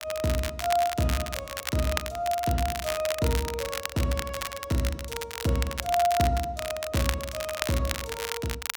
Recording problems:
crackling; vinyl, SNR 5 dB

